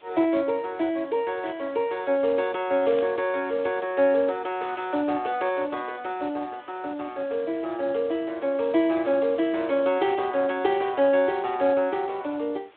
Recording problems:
telephone audio; 260 Hz to 3.7 kHz, Speex
background hiss; SNR 27 dB
static burst; at 3 s; peak -15 dB vs average level

